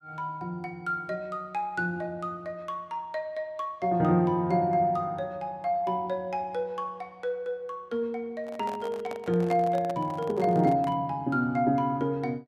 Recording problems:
handling noise; from 8.5 to 11 s; peak -5 dB vs average level

